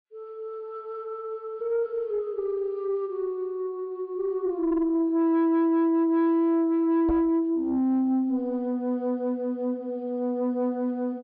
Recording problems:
low-pass filter; nothing above 5 kHz
distortion; soft clipping, signal-to-distortion ratio 10 dB
microphone bump; at 7 s; peak 0 dB vs average level

